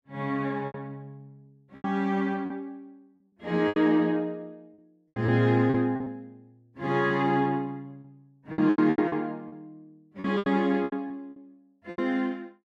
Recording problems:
packet loss; 13% of the sound replaced, filled with repeated pitch periods

